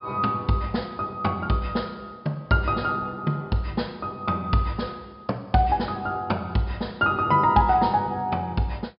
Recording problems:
low-pass filter; nothing above 5.5 kHz

